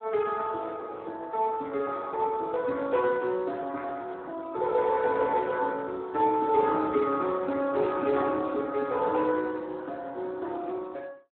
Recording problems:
phone line; 240 Hz to 2 kHz, Speex

